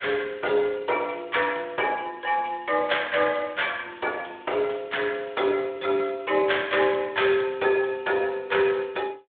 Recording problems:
phone line; 320 Hz to 3.6 kHz, Speex

